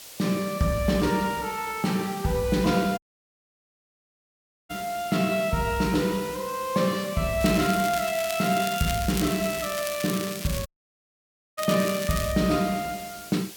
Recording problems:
background hiss; SNR 14 dB
dropout; at 3 s for 1.5 s and at 11 s for 1 s
crackling; from 7.5 to 12 s; loose cable, SNR 9 dB

